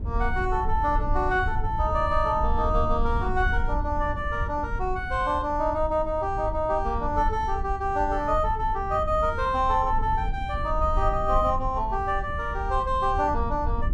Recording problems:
low-frequency rumble; below 70 Hz, SNR 6 dB

